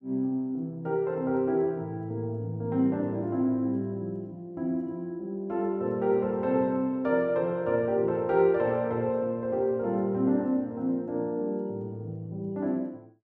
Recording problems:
none

